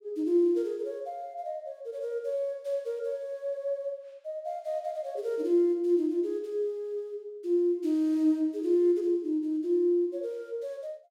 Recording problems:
none

